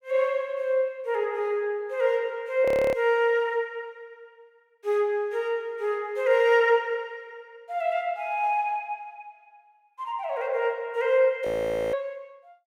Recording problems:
frozen audio; at 2.5 s and at 11 s

